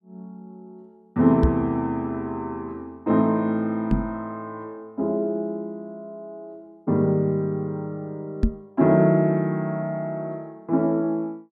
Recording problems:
knock on the microphone; at 1.5 s, at 4 s and at 8.5 s; peak +7 dB vs average level

